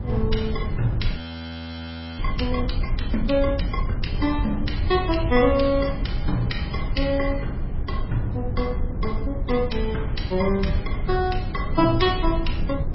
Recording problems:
lossy compression; MP3, log-spectral distance 2 dB, nothing above 5.5 kHz
rumble; below 98 Hz, SNR 3 dB
audio freezing; at 1 s for 1 s

